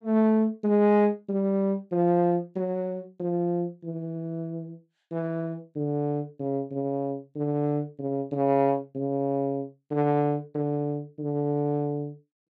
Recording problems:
none

